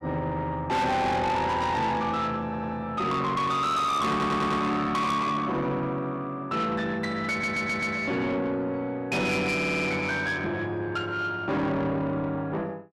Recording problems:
distortion; soft clipping, signal-to-distortion ratio 7 dB
audio stuttering; 4 times, first at 2.5 s

